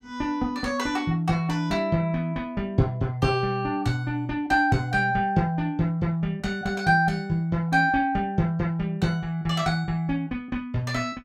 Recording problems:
none

